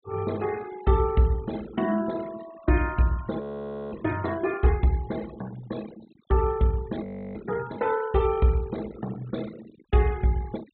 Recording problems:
treble cut off; nothing above 4 kHz
denoising artefacts; signal-to-artefact ratio 18 dB
audio freezing; at 3.5 s for 0.5 s and at 7 s

